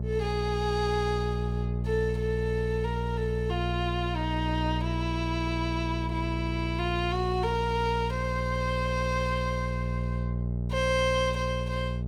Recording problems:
mains hum; 60 Hz, harmonics up to 600 Hz, SNR 1 dB

